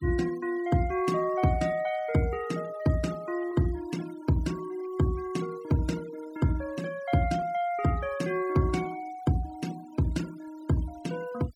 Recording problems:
noise reduction artefacts; signal-to-artefact ratio 19 dB

